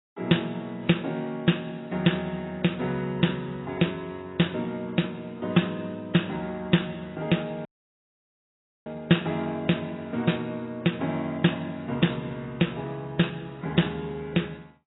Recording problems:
lossy compression; AAC, log-spectral distance 5 dB, nothing above 3.8 kHz
dropout; at 7.5 s for 1 s

